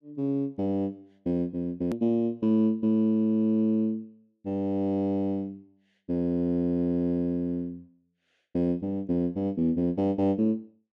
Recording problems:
hard cut with a click; at 2 s

